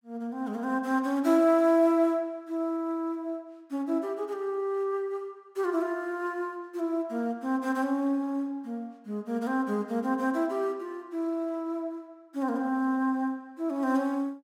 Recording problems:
none

